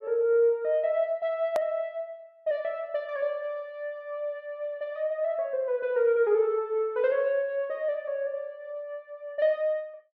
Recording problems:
edit click; at 1.5 s

